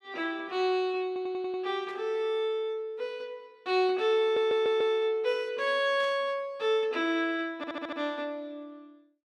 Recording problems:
audio stuttering; at 1 s, at 4 s and at 7.5 s
burst of static; at 2 s and at 6 s; peak -15 dB vs average level

